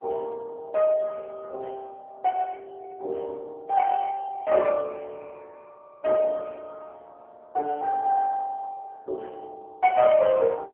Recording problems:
phone line; 320 Hz to 3 kHz, AMR-NB

